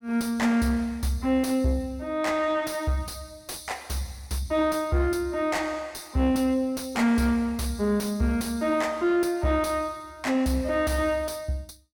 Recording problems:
distorted audio; soft clipping, signal-to-distortion ratio 12 dB

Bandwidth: 17 kHz